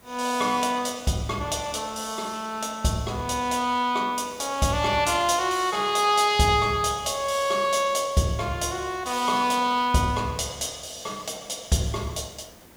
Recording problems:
hiss; slope -5 dB per octave, SNR 26 dB

